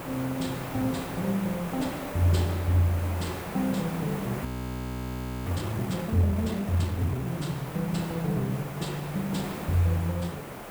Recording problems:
hiss; SNR 8 dB
frozen audio; at 4.5 s for 1 s

